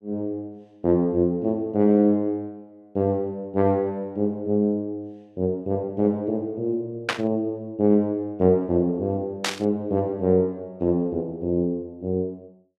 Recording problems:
static burst; at 7 s and at 9.5 s; peak +5 dB vs average level

